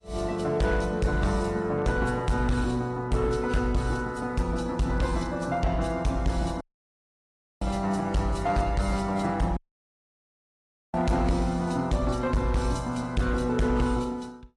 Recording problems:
codec artefacts; AAC, log-spectral distance 2 dB, nothing above 10.4 kHz
distortion; hard clipping, signal-to-distortion ratio 11 dB
audio cutting out; at 6.5 s for 1 s and at 9.5 s for 1.5 s

